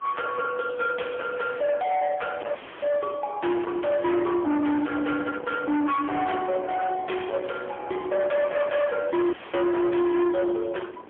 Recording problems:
telephone audio; 170 Hz to 3.3 kHz, AMR-NB, then MP3
distortion; soft clipping, signal-to-distortion ratio 7 dB
wind noise; below 1.3 kHz, SNR 16 dB
audio cutting out; at 2.5 s and at 9.5 s

